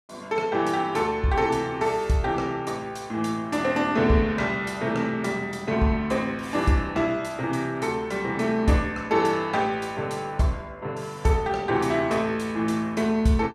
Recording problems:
none

